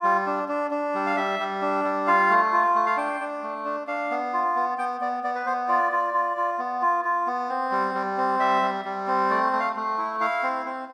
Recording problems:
none

